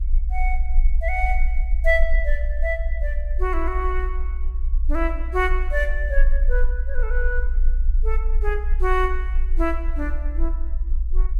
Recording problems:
low-frequency rumble; below 54 Hz, strongest tone 24 Hz, SNR -2 dB

